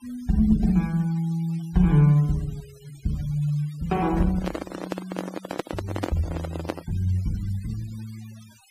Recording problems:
denoising artefacts; signal-to-artefact ratio 22 dB
microphone handling noise; from 4 to 7 s; peak +1 dB vs average level

